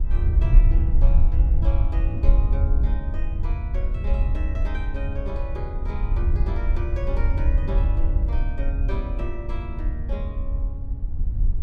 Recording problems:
wind on the microphone; below 64 Hz, SNR -12 dB

